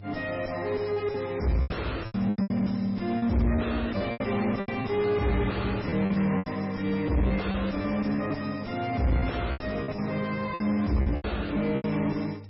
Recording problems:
lossy codec; MP3, log-spectral distance 4 dB, nothing above 5.5 kHz
distorted audio; soft clipping, signal-to-distortion ratio 6 dB
hum; 50 Hz, harmonics up to 500 Hz, SNR 17 dB
lost packets; 10% of the sound replaced, filled with repeated pitch periods

